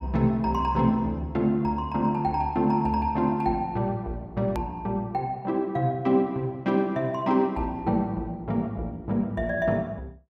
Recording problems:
click at an edit; at 4.5 s

